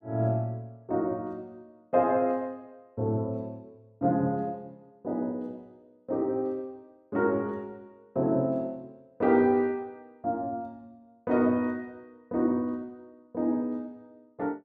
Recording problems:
none

